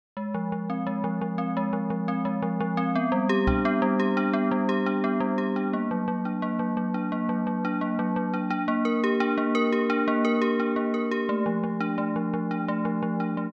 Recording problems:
knock on the microphone; at 3.5 s; peak +2 dB vs average level

